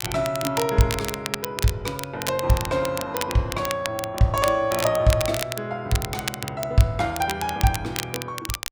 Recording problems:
crackling; vinyl, SNR 7 dB

